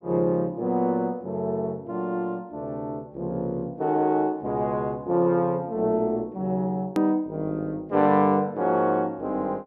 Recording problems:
hard cut with a click; at 7 s

